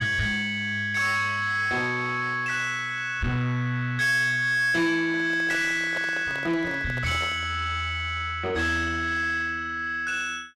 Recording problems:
distorted audio; soft clipping, signal-to-distortion ratio 10 dB
microphone handling noise; from 5 to 7.5 s; peak -5 dB vs average level

